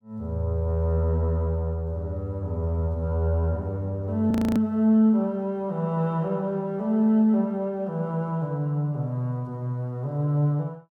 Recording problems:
audio freezing; at 4.5 s

